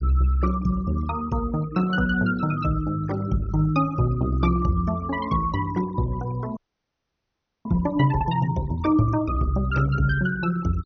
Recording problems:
low-pass filter; nothing above 6.3 kHz
noise reduction artefacts; signal-to-artefact ratio 20 dB
frozen audio; at 6.5 s for 1 s

